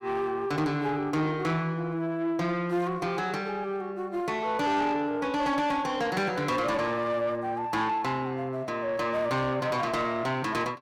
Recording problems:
distortion; soft clipping, signal-to-distortion ratio 11 dB

